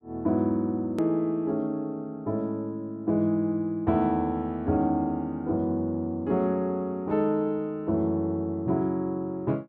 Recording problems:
edit click; at 1 s

